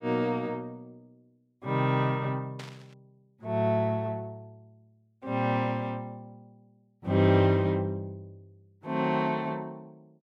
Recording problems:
burst of static; at 2.5 s; peak -11 dB vs average level

